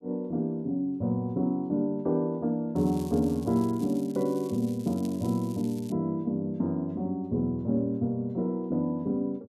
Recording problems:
crackling; from 3 to 4 s and from 4.5 to 6 s; loose cable, SNR 22 dB

